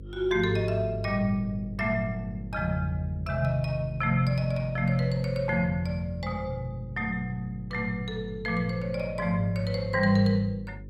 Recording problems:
hum; 50 Hz, harmonics up to 550 Hz, SNR 14 dB

